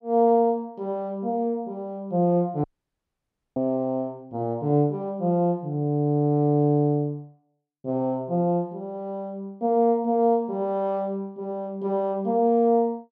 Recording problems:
dropout; at 2.5 s for 1 s

